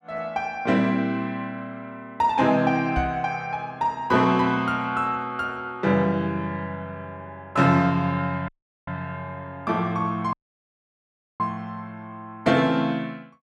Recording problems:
microphone thump; at 3 s; peak -1 dB vs average level
dropout; at 8.5 s and at 10 s for 1 s

